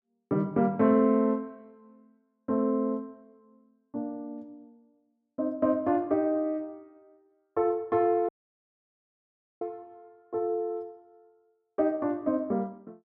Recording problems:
dropout; at 8.5 s for 1.5 s

